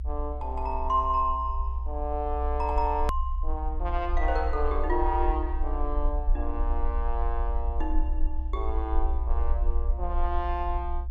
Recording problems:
rumble; below 60 Hz, strongest tone 20 Hz, SNR 0 dB
edit click; at 3 s

